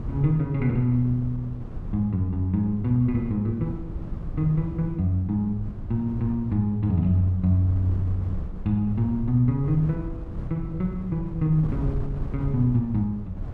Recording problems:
wind noise; below 130 Hz, SNR 11 dB

